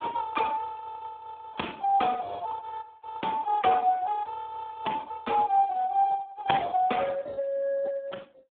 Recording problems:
phone line; 240 Hz to 2.2 kHz, Speex

